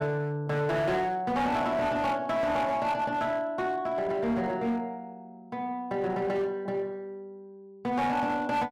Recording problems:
distorted audio; hard clipping, signal-to-distortion ratio 11 dB

